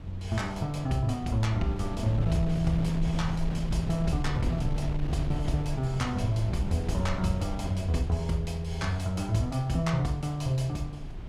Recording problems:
wind noise; below 140 Hz, SNR 7 dB

